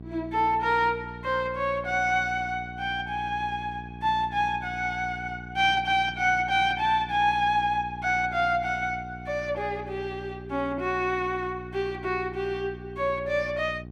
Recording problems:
hum; 60 Hz, harmonics up to 780 Hz, SNR 15 dB

